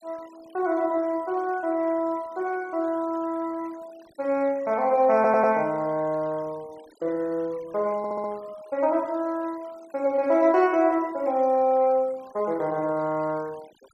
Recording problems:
denoising artefacts; signal-to-artefact ratio 26 dB
audio stuttering; at 5 s and at 8 s

